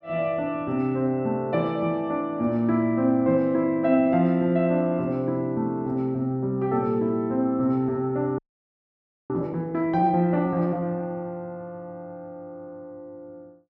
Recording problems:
frozen audio; at 8.5 s for 1 s

